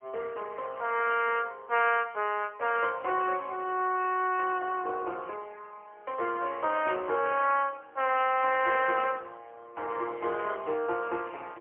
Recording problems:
telephone audio; 320 Hz to 3.1 kHz, AMR-NB, then MP3

